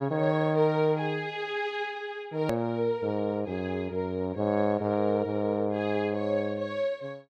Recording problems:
edit click; at 2.5 s

